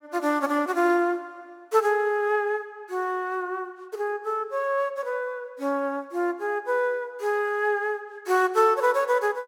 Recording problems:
none

